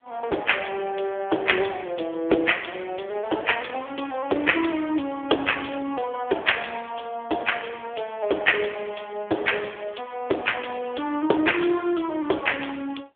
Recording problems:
telephone audio; 280 Hz to 3.5 kHz, AMR-NB

